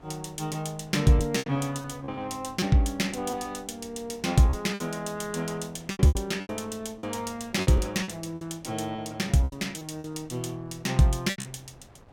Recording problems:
wind on the microphone; below 740 Hz, SNR 25 dB
lost packets; 9% of the sound replaced, filled with repeated pitch periods

